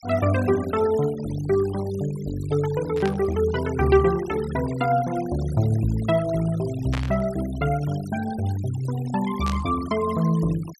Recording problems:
denoising artefacts; signal-to-artefact ratio 18 dB
static burst; at 3 s, at 7 s and at 9.5 s; peak -4 dB vs average level

